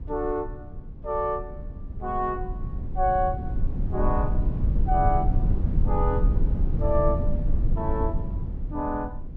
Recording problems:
rumble; below 86 Hz, SNR -1 dB

